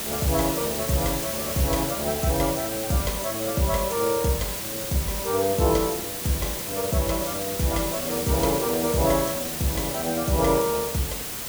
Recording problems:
hiss; slope -2 dB per octave, SNR 3 dB

